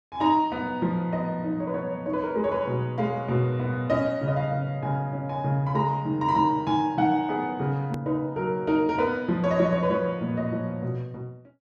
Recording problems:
click at an edit; at 8 s

